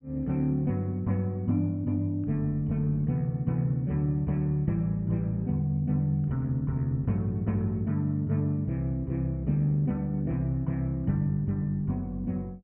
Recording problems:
treble cut off; nothing above 3.2 kHz

